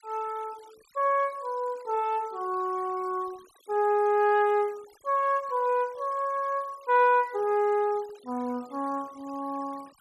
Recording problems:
denoising artefacts; signal-to-artefact ratio 26 dB

